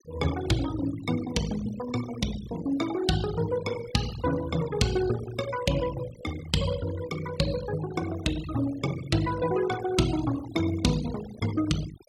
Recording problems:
denoising artefacts; signal-to-artefact ratio 13 dB

